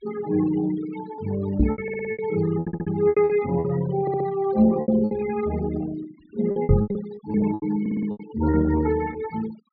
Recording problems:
low-pass filter; nothing above 4.8 kHz
denoising artefacts; signal-to-artefact ratio 15 dB
lost packets; 12% of the sound replaced, filled with repeated pitch periods
microphone thump; at 1.5 s and at 6.5 s; peak +8 dB vs average level
stutter; 4 times, first at 2 s

